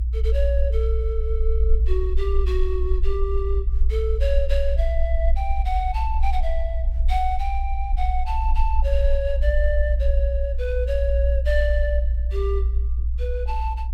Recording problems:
low-frequency rumble; below 60 Hz, SNR -5 dB

